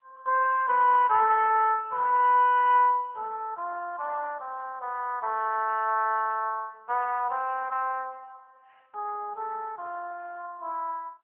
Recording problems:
phone line; 340 Hz to 2.6 kHz, AMR-NB

